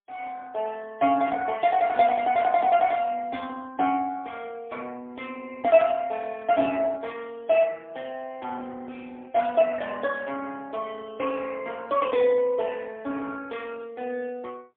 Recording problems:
telephone audio; 220 Hz to 3.4 kHz, AMR-NB, then MP3

